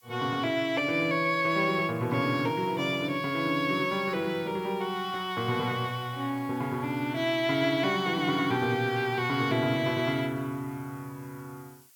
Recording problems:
background hiss; SNR 27 dB

